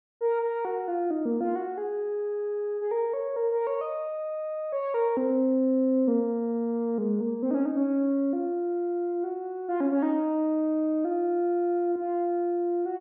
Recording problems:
none

